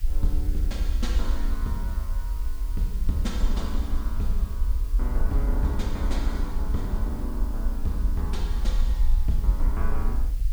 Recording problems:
hiss; slope +1 dB per octave, SNR 15 dB
low-frequency rumble; below 52 Hz, SNR -5 dB

